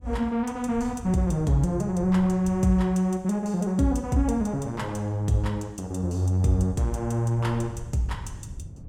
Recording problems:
wind noise; below 120 Hz, SNR 16 dB

